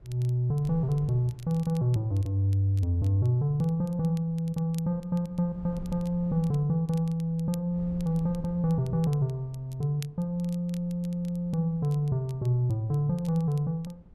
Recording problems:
wind noise; below 120 Hz, SNR 22 dB
crackle; vinyl, SNR 27 dB

